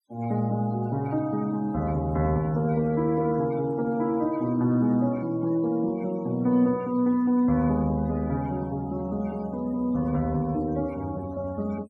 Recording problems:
noise reduction artefacts; signal-to-artefact ratio 24 dB

